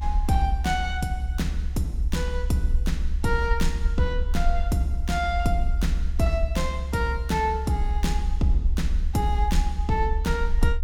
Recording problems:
low-frequency rumble; below 68 Hz, SNR 1 dB

